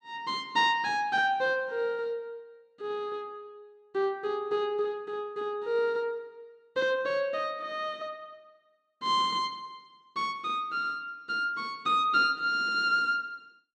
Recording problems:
none

